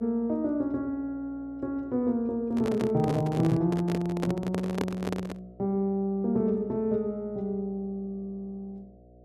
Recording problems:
electrical hum; 60 Hz, harmonics up to 720 Hz, SNR 23 dB
microphone handling noise; from 2.5 to 5.5 s; peak +3 dB vs average level

